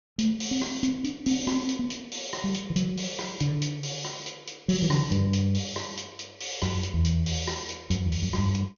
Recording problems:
treble cut off; nothing above 6.6 kHz

